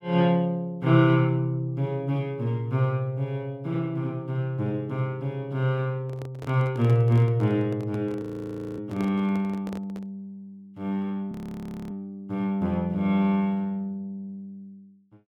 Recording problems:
handling noise; from 6 to 10 s; peak -7 dB vs average level
frozen audio; at 8 s for 0.5 s and at 11 s for 0.5 s

